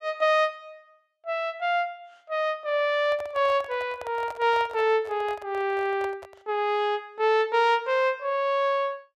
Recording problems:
microphone handling noise; from 3 to 6.5 s; peak -10 dB vs average level

